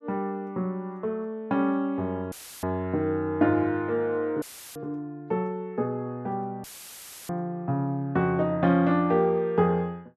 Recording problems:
dropout; at 2.5 s, at 4.5 s and at 6.5 s for 0.5 s; filled with static

